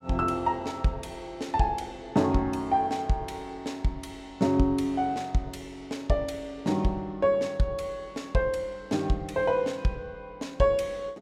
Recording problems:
none

